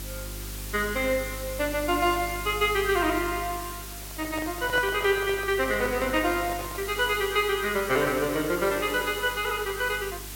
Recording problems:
hum; 50 Hz, harmonics up to 400 Hz, SNR 16 dB
hiss; slope 0 dB per octave, SNR 12 dB
handling noise; from 4 to 7 s; peak -6 dB vs average level

